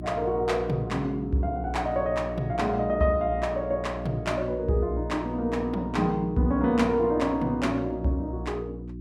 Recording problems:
electrical hum; 60 Hz, harmonics up to 360 Hz, SNR 10 dB

